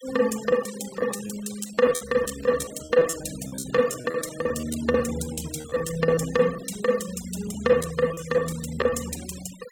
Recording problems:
denoising artefacts; signal-to-artefact ratio 15 dB
packet loss; 13% of the sound replaced, filled with repeated pitch periods

